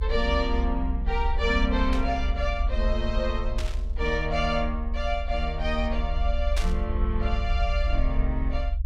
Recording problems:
rumble; below 62 Hz, SNR 0 dB
static burst; at 2 s, at 3.5 s and at 6.5 s; peak -1 dB vs average level

